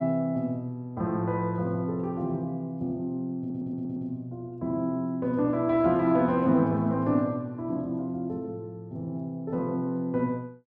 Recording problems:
audio stuttering; at 3.5 s

